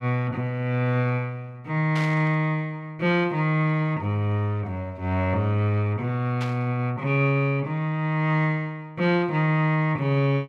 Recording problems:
burst of static; at 2 s and at 6.5 s; peak -7 dB vs average level

